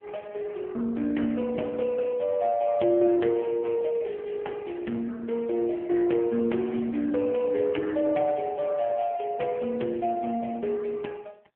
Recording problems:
telephone audio; 170 Hz to 3.2 kHz, AMR-NB

